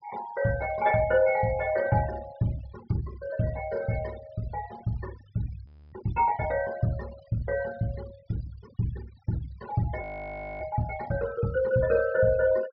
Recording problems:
low-pass filter; nothing above 5.5 kHz
noise reduction artefacts; signal-to-artefact ratio 19 dB
audio freezing; at 5.5 s and at 10 s for 0.5 s

